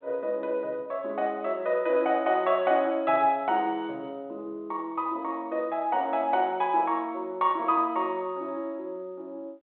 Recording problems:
telephone audio; 280 Hz to 3.7 kHz, G.726

